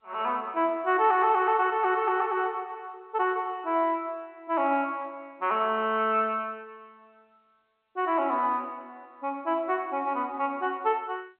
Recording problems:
telephone audio; 240 Hz to 3.3 kHz, G.711

